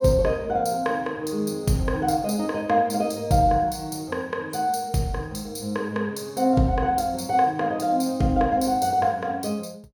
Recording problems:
none

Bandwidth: 18 kHz